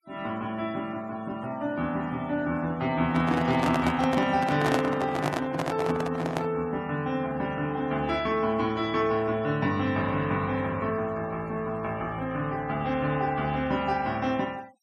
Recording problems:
noise reduction artefacts; signal-to-artefact ratio 24 dB
handling noise; from 3 to 6.5 s; peak +5 dB vs average level

